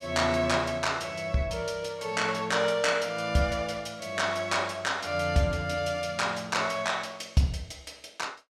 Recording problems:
none

